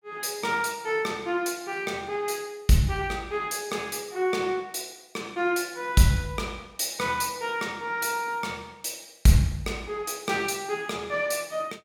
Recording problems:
none

